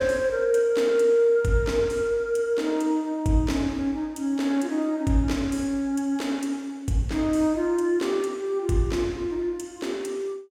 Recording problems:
none

